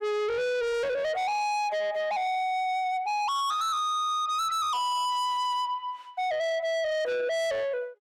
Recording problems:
distortion; soft clipping, signal-to-distortion ratio 6 dB

